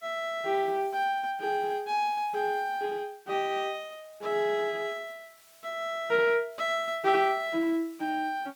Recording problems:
hiss; slope +1 dB per octave, SNR 28 dB

